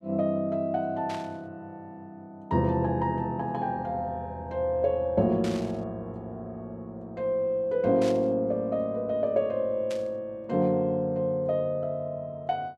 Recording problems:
burst of static; 4 times, first at 1 s; peak -8 dB vs average level

